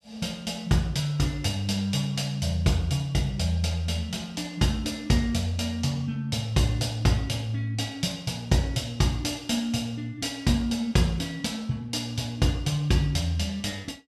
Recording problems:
none

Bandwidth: 14.5 kHz